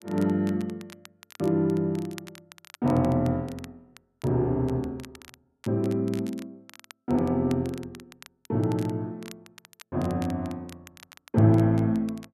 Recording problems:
crackling; vinyl, SNR 23 dB

